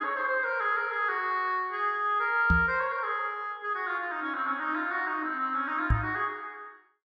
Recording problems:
microphone bump; at 2.5 s and at 6 s; peak +6 dB vs average level

